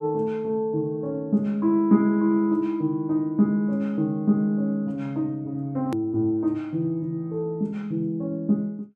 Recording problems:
click at an edit; at 6 s

